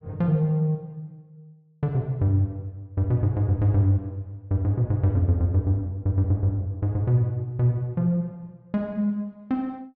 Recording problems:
treble missing; nothing above 7.7 kHz

